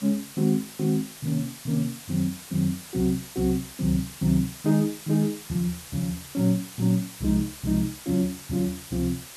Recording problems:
hiss; slope 0 dB per octave, SNR 14 dB

